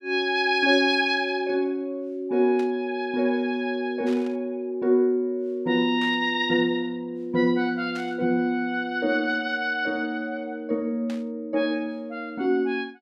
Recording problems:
burst of static; 5 times, first at 2.5 s; peak -12 dB vs average level

